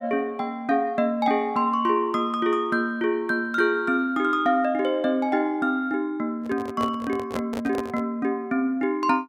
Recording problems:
handling noise; from 6.5 to 8 s; peak -3 dB vs average level

